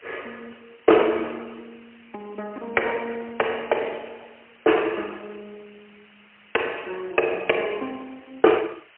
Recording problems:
phone line; 300 Hz to 3 kHz, AMR-NB, then MP3
hiss; SNR 27 dB

